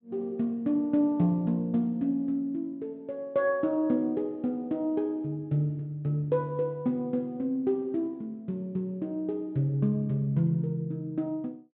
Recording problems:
treble cut off; nothing above 4 kHz

